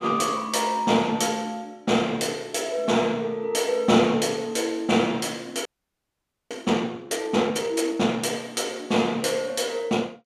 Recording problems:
audio freezing; at 5.5 s for 1 s

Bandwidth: 15 kHz